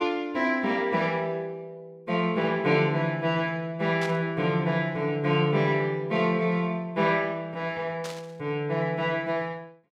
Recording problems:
static burst; at 4 s and at 8 s; peak -7 dB vs average level

